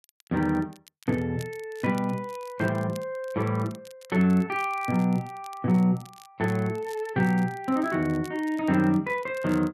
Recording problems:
crackling; vinyl, SNR 25 dB

